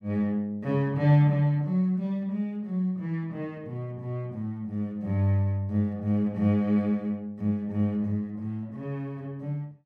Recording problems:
none

